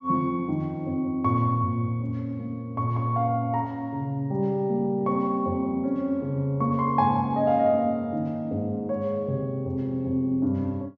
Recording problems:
treble missing; nothing above 8 kHz

